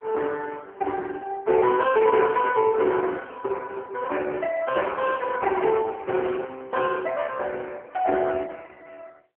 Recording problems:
phone line; 300 Hz to 3.2 kHz, AMR-NB

